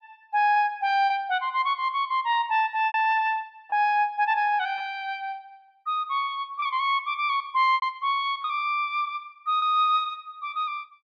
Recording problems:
lost packets; 4% of the sound replaced, filled with repeated pitch periods

